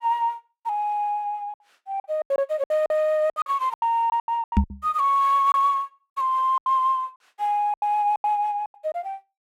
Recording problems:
lost packets; 13% of the sound replaced, filled with silence
microphone thump; at 4.5 s; peak +8 dB vs average level

